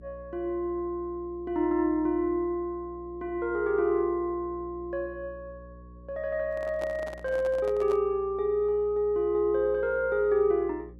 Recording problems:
electrical hum; 60 Hz, harmonics up to 540 Hz, SNR 21 dB
microphone handling noise; from 6.5 to 8 s; peak -7 dB vs average level

